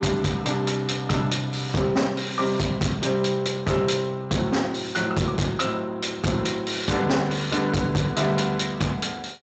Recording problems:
codec artefacts; Speex, log-spectral distance 5 dB, nothing above 7.3 kHz
distortion; hard clipping, signal-to-distortion ratio 6 dB

